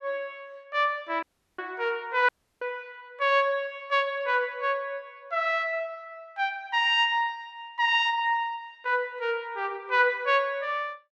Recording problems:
audio cutting out; at 1 s and at 2.5 s

